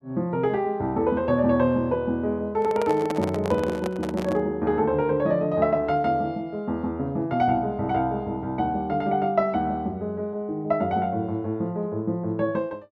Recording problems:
microphone handling noise; from 2.5 to 4.5 s; peak -1 dB vs average level

